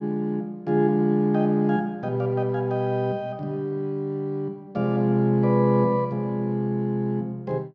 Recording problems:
none

